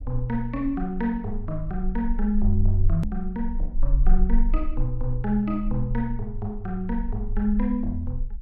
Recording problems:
low-frequency rumble; below 40 Hz, strongest tone 20 Hz, SNR 3 dB
edit click; at 3 s

